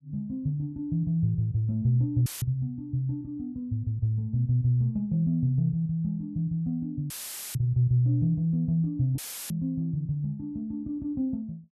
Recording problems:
audio cutting out; at 2.5 s, at 7 s and at 9 s; filled with static

